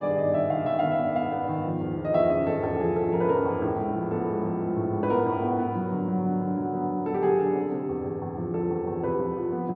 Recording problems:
none

